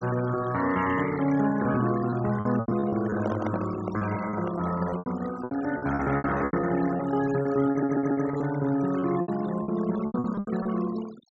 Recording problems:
treble cut off; nothing above 8 kHz
denoising artefacts; signal-to-artefact ratio 14 dB
packet loss; 13% of the sound replaced, filled with repeated pitch periods
handling noise; from 3 to 5 s; peak -2 dB vs average level
stutter; at 7.5 s

